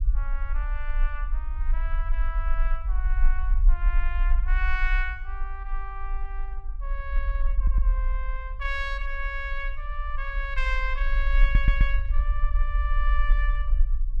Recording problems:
low-frequency rumble; below 44 Hz, strongest tone 24 Hz, SNR -6 dB
audio stuttering; at 7.5 s and at 11 s

